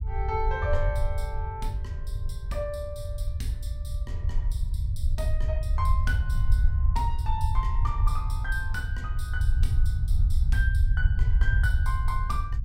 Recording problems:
rumble; below 78 Hz, SNR -6 dB

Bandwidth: 16 kHz